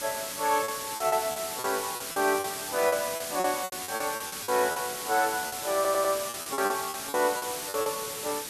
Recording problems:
hiss; SNR 5 dB
lost packets; 14% of the sound replaced, filled with repeated pitch periods
stutter; at 6 s

